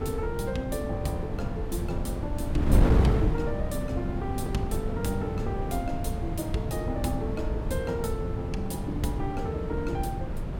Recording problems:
wind on the microphone; below 170 Hz, SNR -2 dB

